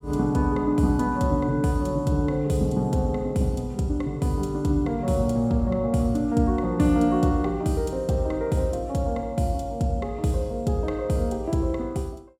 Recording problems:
none

